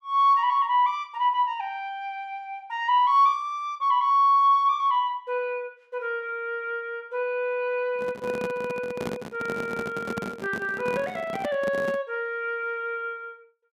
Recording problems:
handling noise; from 8 to 12 s; peak -3 dB vs average level

